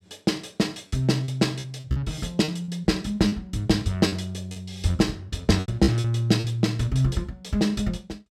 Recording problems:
packet loss; 7% of the sound replaced, filled with repeated pitch periods

